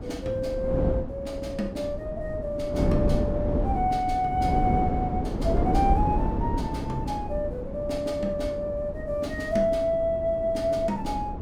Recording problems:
wind noise; below 310 Hz, SNR 2 dB

